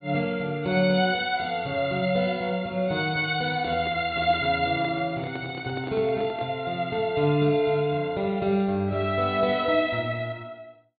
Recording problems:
low-pass filter; nothing above 4.5 kHz
handling noise; from 3.5 to 6.5 s; peak -8 dB vs average level

